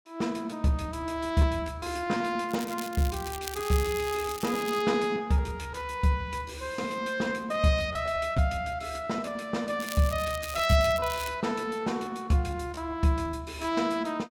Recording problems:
packet loss; 10% of the sound replaced, filled with repeated pitch periods
crackle; from 2.5 to 5 s and from 10 to 11 s; loose cable, SNR 12 dB

